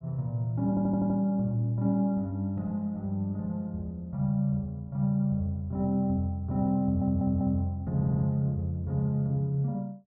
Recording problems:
stutter; at 0.5 s, at 7 s and at 8 s

